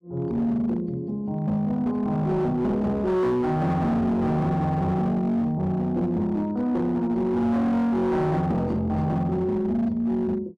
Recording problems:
distorted audio; hard clipping, signal-to-distortion ratio 10 dB

